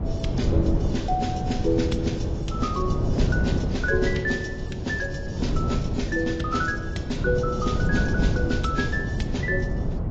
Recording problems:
codec artefacts; AAC, log-spectral distance 2 dB, nothing above 7.3 kHz
wind noise; below 200 Hz, SNR -1 dB

